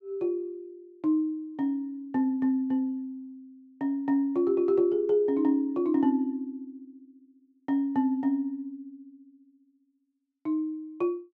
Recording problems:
none

